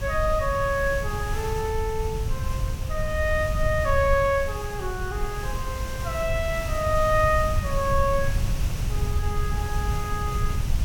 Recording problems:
background hiss; slope -3 dB per octave, SNR 12 dB
low-frequency rumble; below 96 Hz, SNR 3 dB

